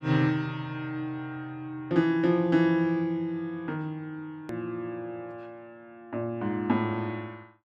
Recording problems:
hard cut with a click; at 4.5 s

